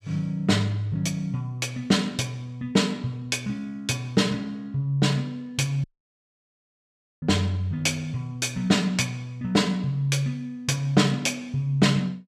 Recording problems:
audio cutting out; at 6 s for 1.5 s

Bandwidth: 14 kHz